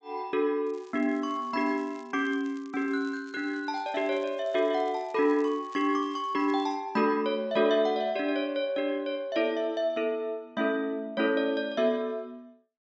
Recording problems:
low-pass filter; nothing above 8 kHz
crackle; from 0.5 to 7 s; loose cable, SNR 29 dB

